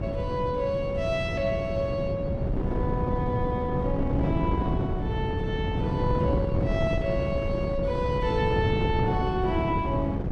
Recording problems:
wind noise; below 290 Hz, SNR -1 dB

